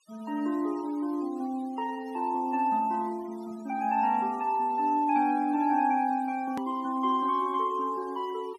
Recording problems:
noise reduction artefacts; signal-to-artefact ratio 25 dB
hard cut with a click; at 6.5 s

